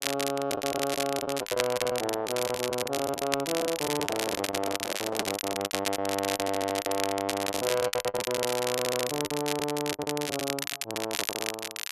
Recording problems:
distortion; soft clipping, signal-to-distortion ratio 11 dB
crackling; vinyl, SNR 2 dB
lost packets; 16% of the sound replaced, filled with the last packet
handling noise; from 4 to 5.5 s; peak +1 dB vs average level
stutter; at 6.5 s and at 8.5 s

